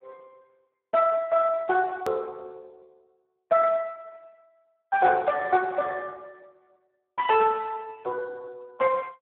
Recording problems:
phone line; 300 Hz to 3 kHz, Speex
edit click; at 2 s

